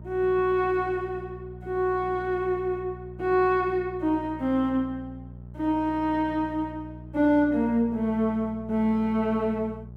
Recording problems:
electrical hum; 60 Hz, harmonics up to 660 Hz, SNR 17 dB

